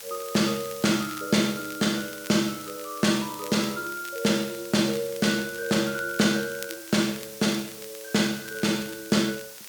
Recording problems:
hiss; slope +1 dB per octave, SNR 14 dB
crackle; vinyl, SNR 19 dB

